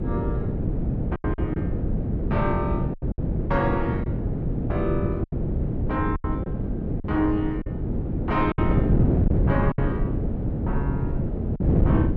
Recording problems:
wind noise; below 240 Hz, SNR -3 dB
packet loss; 8% of the sound replaced, filled with silence

